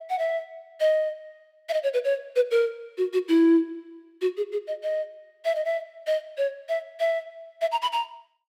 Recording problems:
none

